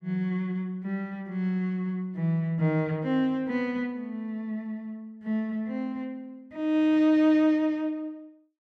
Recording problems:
none

